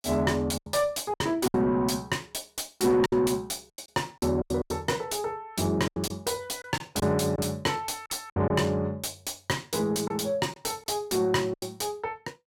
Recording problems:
distorted audio; soft clipping, signal-to-distortion ratio 10 dB
lost packets; 8% of the sound replaced, filled with silence

